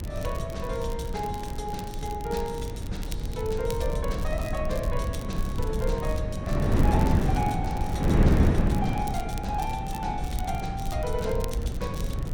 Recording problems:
low-frequency rumble; below 84 Hz, SNR 3 dB
wind on the microphone; below 250 Hz, SNR -3 dB
crackling; vinyl, SNR 14 dB

